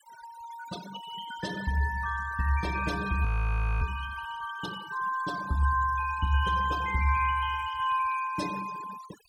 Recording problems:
noise reduction artefacts; signal-to-artefact ratio 14 dB
frozen audio; at 3.5 s for 0.5 s

